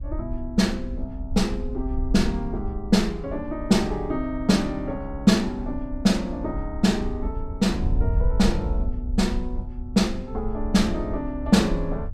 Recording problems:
wind noise; below 64 Hz, SNR 8 dB

